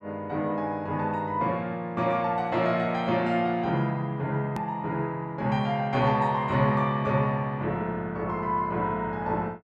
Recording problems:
hard cut with a click; at 4.5 s

